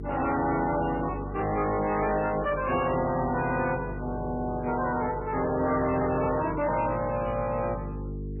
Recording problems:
lossy codec; MP3, log-spectral distance 5 dB, nothing above 2.4 kHz
distortion; soft clipping, signal-to-distortion ratio 10 dB
electrical hum; 50 Hz, harmonics up to 450 Hz, SNR 10 dB

